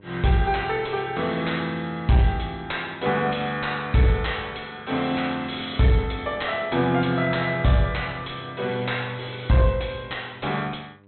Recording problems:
treble cut off; nothing above 4.1 kHz
distortion; soft clipping, signal-to-distortion ratio 11 dB
electrical hum; 50 Hz, harmonics up to 1.6 kHz, SNR 26 dB

